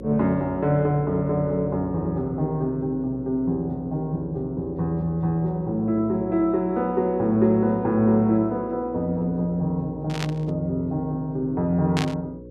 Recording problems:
hum; 60 Hz, harmonics up to 540 Hz, SNR 15 dB
static burst; at 10 s and at 12 s; peak 0 dB vs average level

